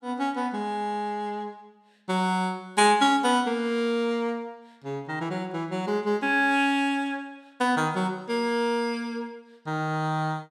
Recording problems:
none

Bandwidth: 16 kHz